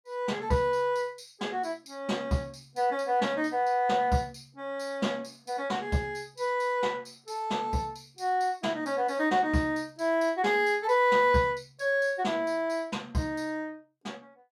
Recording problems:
none

